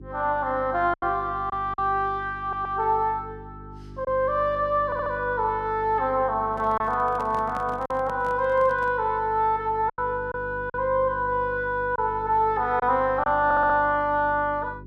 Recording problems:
hum; 50 Hz, harmonics up to 400 Hz, SNR 18 dB
lost packets; 3% of the sound replaced, filled with silence
stutter; at 2.5 s, at 5 s and at 13 s
handling noise; from 6.5 to 9 s; peak -10 dB vs average level

